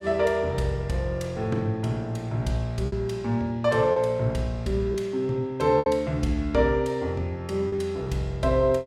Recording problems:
lost packets; 3% of the sound replaced, filled with repeated pitch periods

